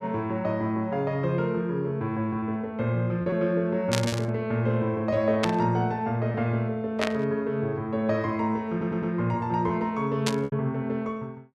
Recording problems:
lost packets; 2% of the sound replaced, filled with repeated pitch periods
burst of static; 4 times, first at 4 s; peak +4 dB vs average level
stutter; at 8.5 s

